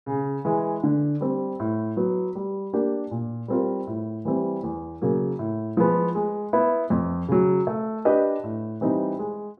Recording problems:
none

